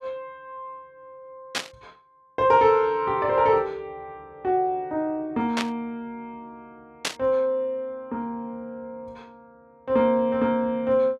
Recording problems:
burst of static; at 1.5 s, at 5.5 s and at 7 s; peak +2 dB vs average level

